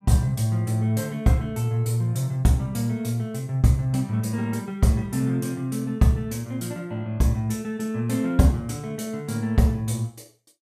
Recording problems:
none

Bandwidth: 15.5 kHz